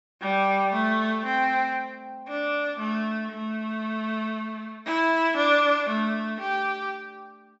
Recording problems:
treble cut off; nothing above 8 kHz

